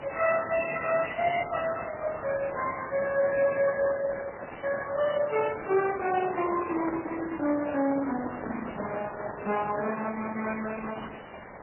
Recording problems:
codec artefacts; Opus, then MP3, log-spectral distance 12 dB, nothing above 2.7 kHz
hiss; SNR 12 dB
handling noise; from 6 to 8.5 s; peak -5 dB vs average level

